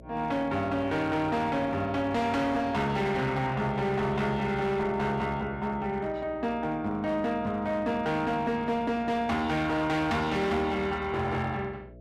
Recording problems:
distorted audio; hard clipping, signal-to-distortion ratio 11 dB
hum; 60 Hz, harmonics up to 660 Hz, SNR 21 dB

